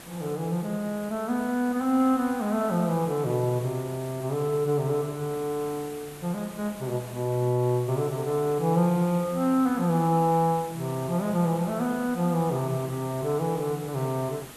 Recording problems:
hiss; slope -3 dB per octave, SNR 17 dB

